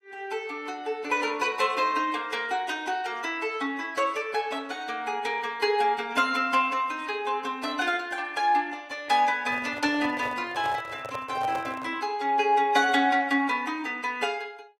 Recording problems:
lossy compression; AAC, log-spectral distance 2 dB, nothing above 15.5 kHz
microphone handling noise; from 9.5 to 12 s; peak -5 dB vs average level

